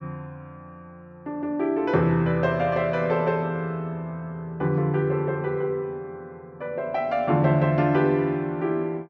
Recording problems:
none

